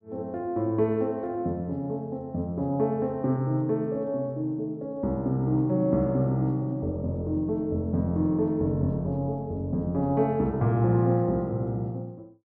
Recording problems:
none

